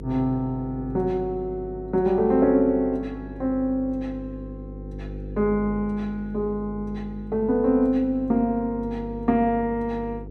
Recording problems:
electrical hum; 50 Hz, harmonics up to 500 Hz, SNR 13 dB

